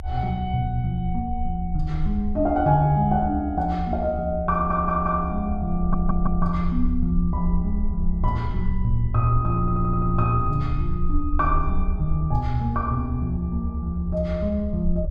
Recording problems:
low-frequency rumble; below 70 Hz, strongest tone 20 Hz, SNR 5 dB
stutter; at 4.5 s, at 6 s and at 9.5 s

